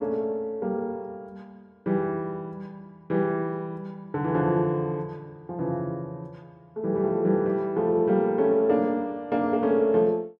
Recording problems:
none

